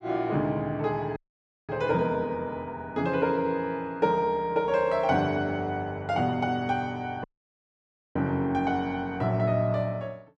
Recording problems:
audio cutting out; at 1 s for 0.5 s and at 7 s for 1 s

